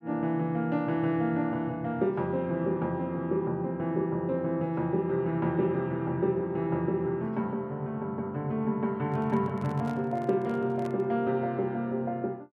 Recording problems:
handling noise; from 9 to 11 s; peak -9 dB vs average level

